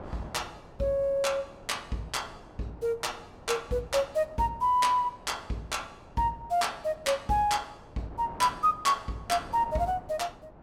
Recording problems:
wind on the microphone; below 790 Hz, SNR 20 dB

